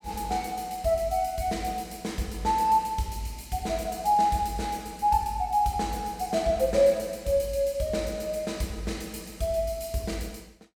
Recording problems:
none

